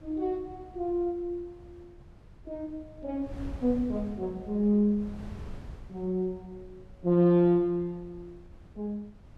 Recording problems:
wind noise; below 130 Hz, SNR 19 dB

